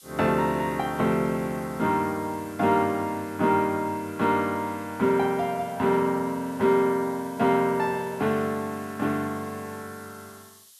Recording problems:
background hiss; SNR 23 dB

